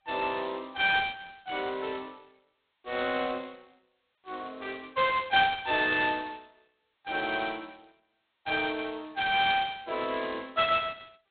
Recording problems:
telephone audio; 260 Hz to 3.9 kHz, G.726

